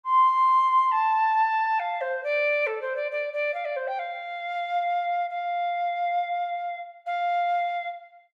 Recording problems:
none

